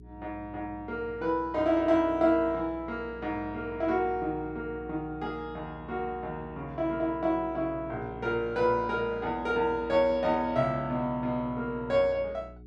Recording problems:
electrical hum; 60 Hz, harmonics up to 420 Hz, SNR 19 dB

